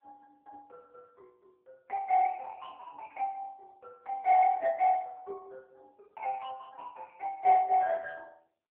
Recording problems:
phone line; 320 Hz to 2.1 kHz, AMR-NB

